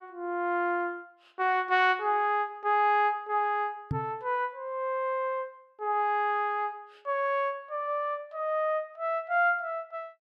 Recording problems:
knock on the microphone; at 4 s; peak +1 dB vs average level

